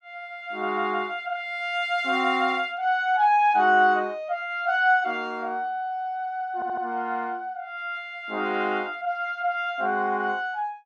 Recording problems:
audio stuttering; at 6.5 s

